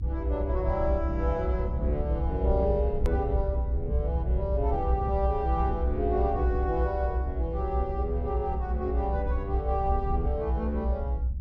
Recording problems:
low-frequency rumble; below 66 Hz, strongest tone 64 Hz, SNR -1 dB
click at an edit; at 3 s

